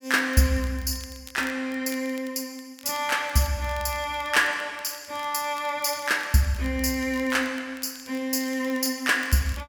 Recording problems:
crackle; vinyl, SNR 22 dB

